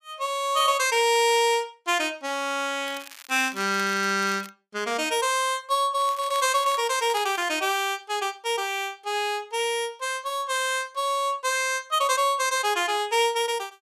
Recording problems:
crackle; from 3 to 4.5 s and from 6 to 7.5 s; loose cable, SNR 19 dB

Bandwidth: 15 kHz